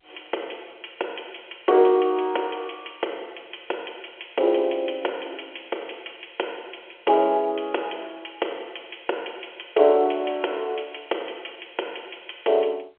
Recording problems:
phone line; 320 Hz to 3.3 kHz, G.711

